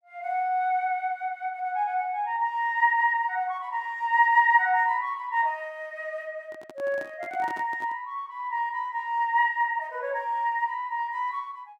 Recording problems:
microphone handling noise; from 6.5 to 8 s; peak -11 dB vs average level

